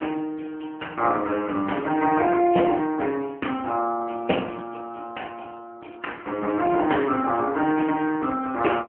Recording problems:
phone line; 240 Hz to 3.2 kHz, AMR-NB

